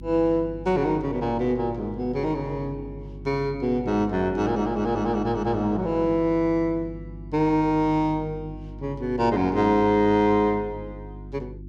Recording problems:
hum; 50 Hz, harmonics up to 350 Hz, SNR 16 dB

